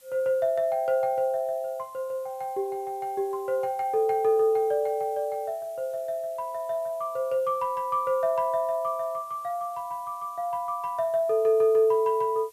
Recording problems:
background hiss; slope +1 dB per octave, SNR 27 dB

